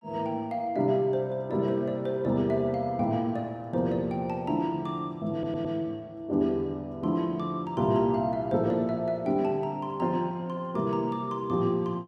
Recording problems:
stutter; at 5.5 s

